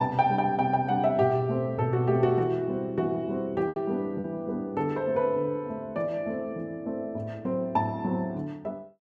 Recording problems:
lost packets; 1.4% of the sound replaced, filled with repeated pitch periods

